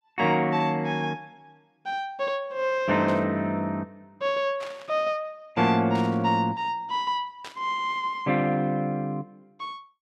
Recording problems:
burst of static; 4 times, first at 3 s; peak -10 dB vs average level

